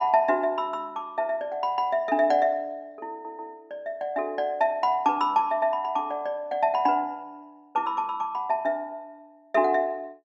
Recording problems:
stutter; at 3 s

